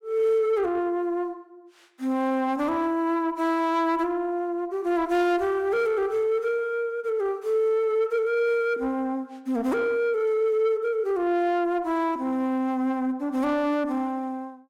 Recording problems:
distortion; soft clipping, signal-to-distortion ratio 11 dB

